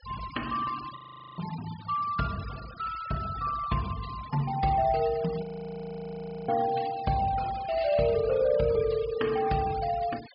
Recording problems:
low-pass filter; nothing above 5.5 kHz
noise reduction artefacts; signal-to-artefact ratio 17 dB
audio freezing; at 1 s and at 5.5 s for 1 s

